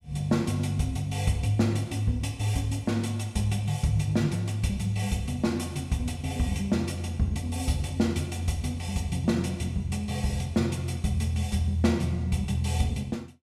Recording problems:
none

